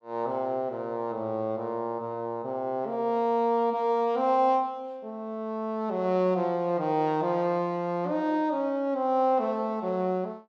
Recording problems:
none

